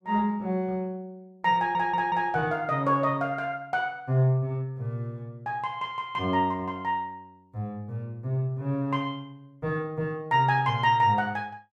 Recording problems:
audio stuttering; at 1.5 s

